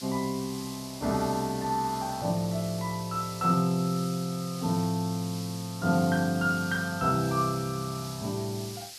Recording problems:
hiss; SNR 12 dB

